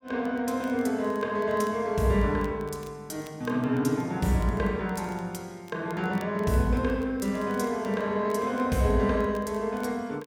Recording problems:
crackle; vinyl, SNR 28 dB

